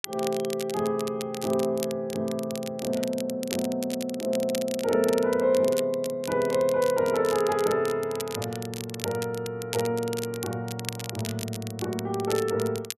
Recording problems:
crackling; vinyl, SNR 11 dB

